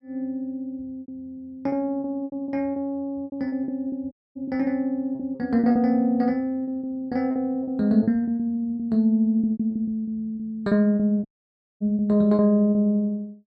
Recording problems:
packet loss; 13% of the sound replaced, filled with repeated pitch periods
dropout; at 4 s and at 11 s for 0.5 s

